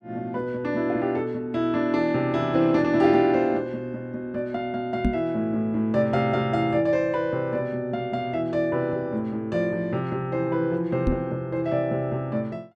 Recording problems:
microphone thump; at 5 s and at 11 s; peak +4 dB vs average level

